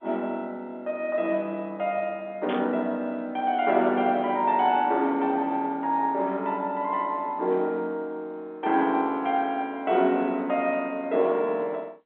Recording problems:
phone line; 220 Hz to 3.6 kHz, G.711
burst of static; at 2.5 s; peak -6 dB vs average level

